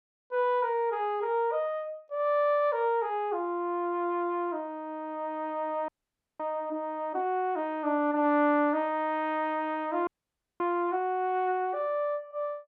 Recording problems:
audio freezing; at 6 s for 0.5 s and at 10 s for 0.5 s

